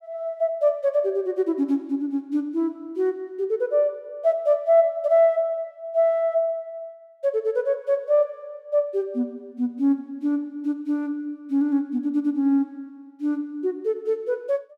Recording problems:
none

